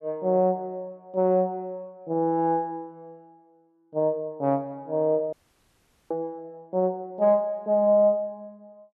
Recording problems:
audio cutting out; at 5.5 s for 1 s

